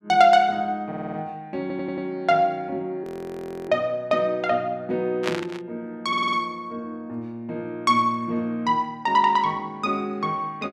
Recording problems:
stutter; at 1 s, at 1.5 s and at 6 s
audio freezing; at 3 s for 0.5 s
static burst; at 5 s; peak +1 dB vs average level

